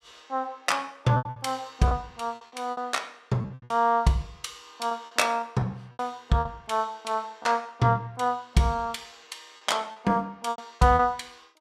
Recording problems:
packet loss; 10% of the sound replaced, filled with repeated pitch periods

